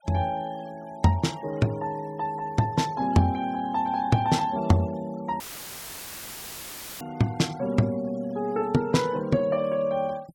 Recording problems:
noise reduction artefacts; signal-to-artefact ratio 25 dB
dropout; at 5.5 s for 1.5 s; filled with static

